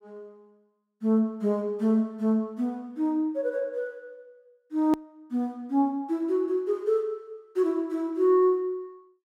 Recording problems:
edit click; at 5 s

